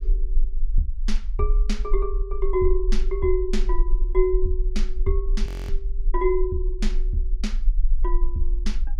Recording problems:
rumble; below 36 Hz, strongest tone 20 Hz, SNR -1 dB
audio freezing; at 5.5 s

